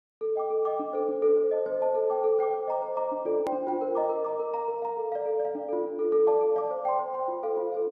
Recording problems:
hard cut with a click; at 3.5 s

